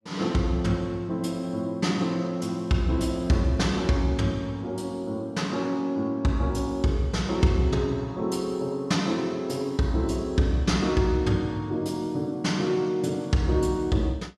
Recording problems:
none

